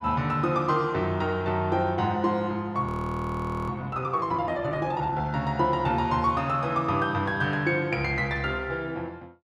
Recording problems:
frozen audio; at 3 s for 1 s

